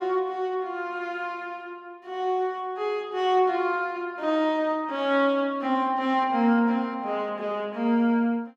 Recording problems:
none

